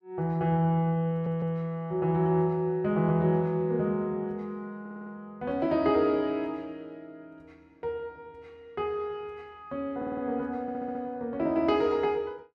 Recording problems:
audio stuttering; 4 times, first at 1 s

